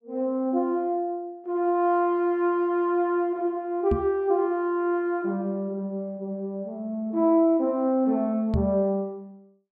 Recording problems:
microphone thump; at 4 s and at 8.5 s; peak +2 dB vs average level

